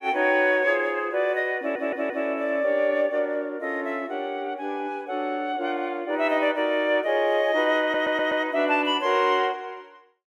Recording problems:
stutter; at 1.5 s and at 8 s

